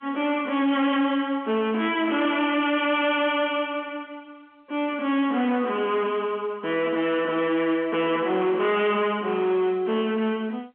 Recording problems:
phone line; 170 Hz to 3.3 kHz, G.711
distorted audio; hard clipping, signal-to-distortion ratio 10 dB

